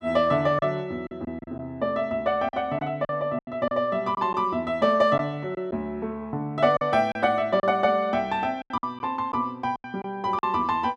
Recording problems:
packet loss; 8% of the sound replaced, filled with silence

